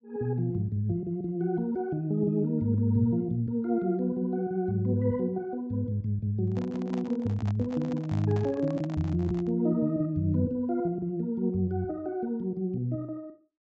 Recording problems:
treble cut off; nothing above 8 kHz
microphone handling noise; from 6.5 to 9.5 s; peak -8 dB vs average level

